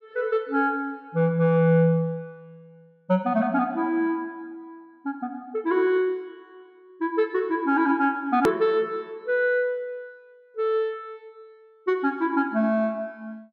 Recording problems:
click at an edit; at 8.5 s

